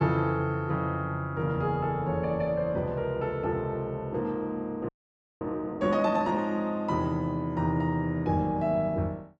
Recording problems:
audio freezing; at 5 s for 0.5 s

